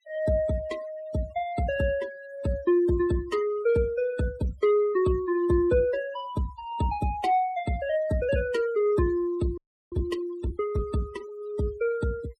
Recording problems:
denoising artefacts; signal-to-artefact ratio 18 dB
frozen audio; at 9.5 s

